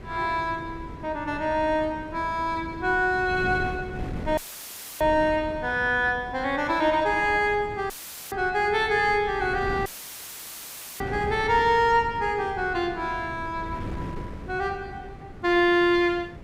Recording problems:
wind noise; below 340 Hz, SNR 14 dB
audio cutting out; at 4.5 s for 0.5 s, at 8 s and at 10 s for 1 s; filled with static

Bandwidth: 15.5 kHz